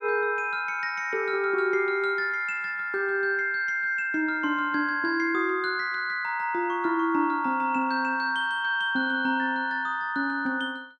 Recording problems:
none

